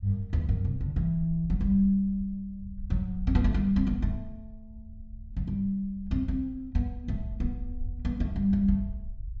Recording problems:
treble cut off; nothing above 8 kHz
low-frequency rumble; below 68 Hz, SNR 13 dB

